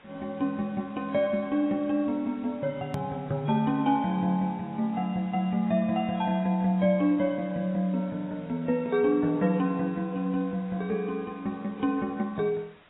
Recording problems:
lossy compression; AAC, log-spectral distance 4 dB, nothing above 13.1 kHz
background hiss; SNR 27 dB
edit click; at 3 s

